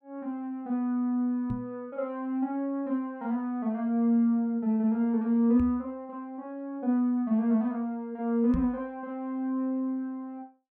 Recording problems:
microphone thump; at 1.5 s, at 5.5 s and at 8.5 s; peak 0 dB vs average level

